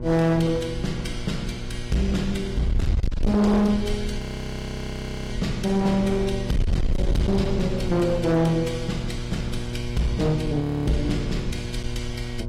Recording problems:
lossy codec; AAC, log-spectral distance 2 dB, nothing above 14.3 kHz
distortion; hard clipping, signal-to-distortion ratio 8 dB
hum; 60 Hz, harmonics up to 1.1 kHz, SNR 10 dB
wind on the microphone; below 86 Hz, SNR 7 dB
audio freezing; at 4 s for 1 s and at 11 s

